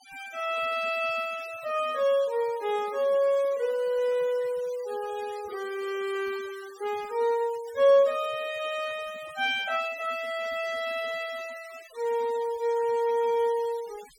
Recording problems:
denoising artefacts; signal-to-artefact ratio 20 dB

